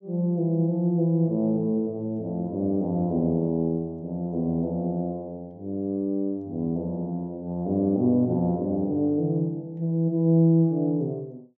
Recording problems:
treble missing; nothing above 8 kHz

